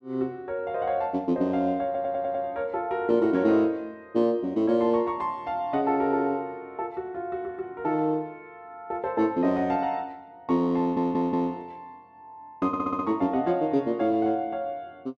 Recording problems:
audio stuttering; at 2 s, at 11 s and at 13 s

